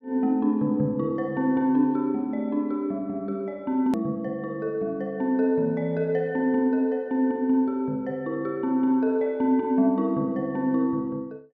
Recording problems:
click at an edit; at 4 s

